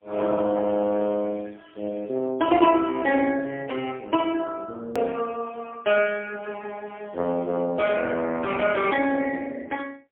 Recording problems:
phone line; 220 Hz to 3.3 kHz, AMR-NB, then MP3
hard cut with a click; at 5 s

